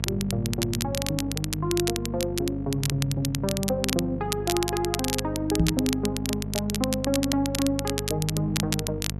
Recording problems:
hum; 50 Hz, harmonics up to 700 Hz, SNR 6 dB
crackle; vinyl, SNR 3 dB
microphone bump; at 5.5 s; peak +9 dB vs average level

